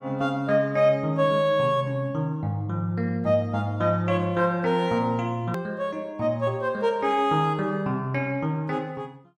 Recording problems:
click at an edit; at 5.5 s

